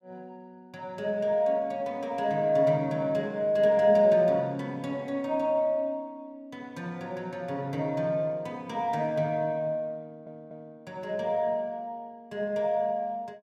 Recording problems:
audio stuttering; at 10 s

